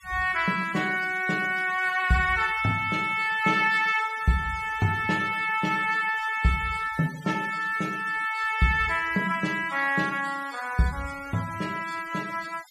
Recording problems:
noise reduction artefacts; signal-to-artefact ratio 19 dB

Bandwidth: 14.5 kHz